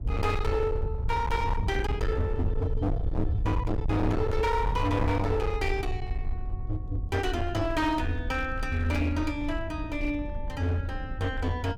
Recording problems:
distorted audio; hard clipping, signal-to-distortion ratio 7 dB
low-frequency rumble; below 92 Hz, SNR 4 dB
wind on the microphone; below 280 Hz, SNR 16 dB

